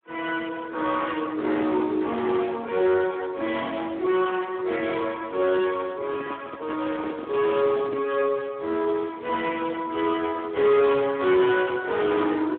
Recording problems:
telephone audio; 280 Hz to 3 kHz, Speex
distorted audio; hard clipping, signal-to-distortion ratio 11 dB
microphone handling noise; from 6 to 8 s; peak -6 dB vs average level

